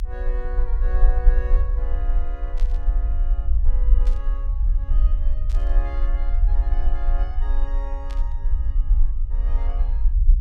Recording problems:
rumble; below 44 Hz, SNR -16 dB
static burst; 4 times, first at 2.5 s; peak -1 dB vs average level

